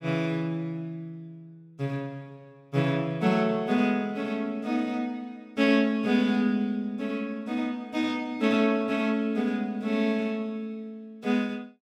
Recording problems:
none

